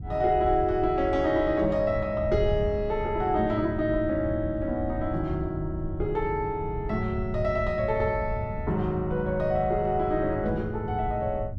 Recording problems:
wind on the microphone; below 120 Hz, SNR 9 dB

